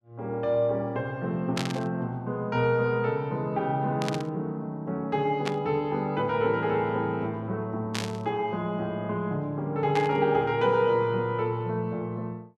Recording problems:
static burst; 5 times, first at 1.5 s; peak 0 dB vs average level

